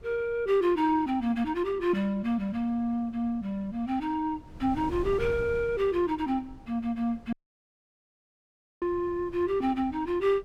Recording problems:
wind on the microphone; below 200 Hz, SNR 18 dB
audio cutting out; at 7.5 s for 1.5 s

